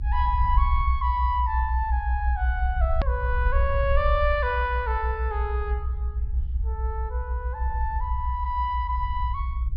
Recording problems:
treble cut off; nothing above 5.5 kHz
rumble; below 66 Hz, SNR -1 dB
hard cut with a click; at 3 s

